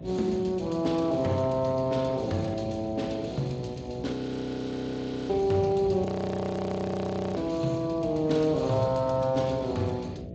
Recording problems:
codec artefacts; Speex, log-spectral distance 5 dB, nothing above 7.3 kHz
hum; 60 Hz, harmonics up to 660 Hz, SNR 15 dB
low-frequency rumble; below 230 Hz, SNR 15 dB
audio freezing; at 4 s for 1 s and at 6 s for 1.5 s

